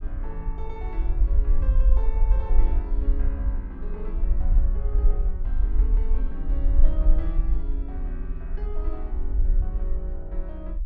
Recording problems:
low-frequency rumble; below 46 Hz, SNR -13 dB

